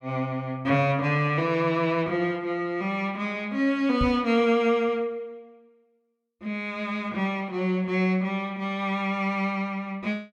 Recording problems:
microphone bump; at 4 s; peak +1 dB vs average level

